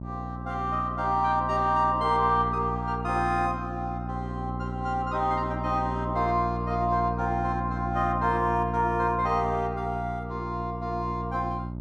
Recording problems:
electrical hum; 60 Hz, harmonics up to 900 Hz, SNR 6 dB

